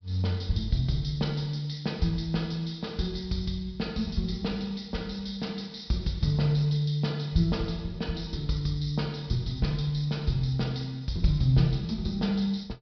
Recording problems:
treble missing; nothing above 5.5 kHz

